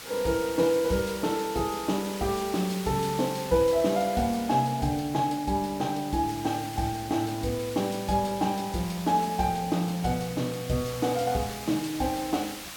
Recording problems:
hiss; slope 0 dB per octave, SNR 12 dB

